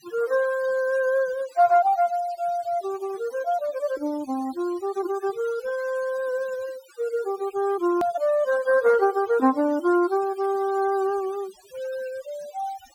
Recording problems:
denoising artefacts; signal-to-artefact ratio 21 dB
hard cut with a click; at 8 s

